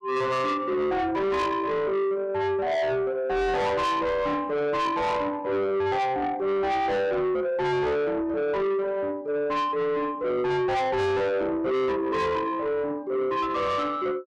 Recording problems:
distorted audio; soft clipping, signal-to-distortion ratio 7 dB

